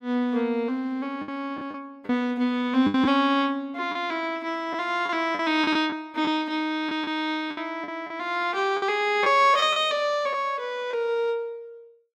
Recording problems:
packet loss; 6% of the sound replaced, filled with the last packet

